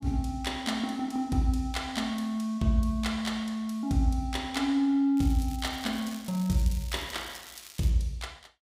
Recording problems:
crackling; from 5 to 8 s; loose cable, SNR 17 dB

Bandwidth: 15.5 kHz